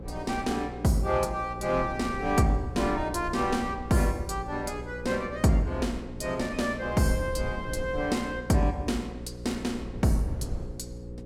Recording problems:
hum; 60 Hz, harmonics up to 540 Hz, SNR 13 dB
wind on the microphone; below 110 Hz, SNR 15 dB

